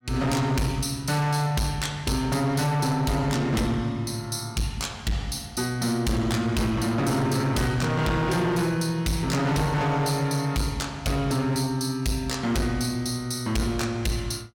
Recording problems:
distortion; hard clipping, signal-to-distortion ratio 8 dB

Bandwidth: 17 kHz